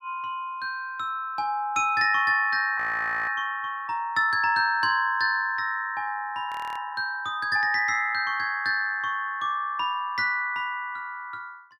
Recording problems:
frozen audio; at 3 s for 0.5 s and at 6.5 s

